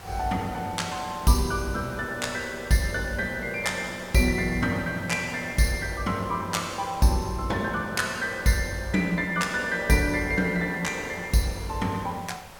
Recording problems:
background hiss; SNR 18 dB

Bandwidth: 17.5 kHz